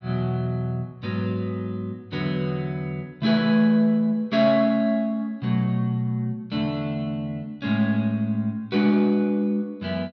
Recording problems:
none

